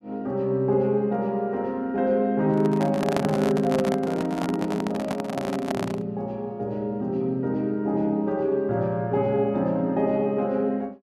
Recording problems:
handling noise; from 2.5 to 6 s; peak +3 dB vs average level

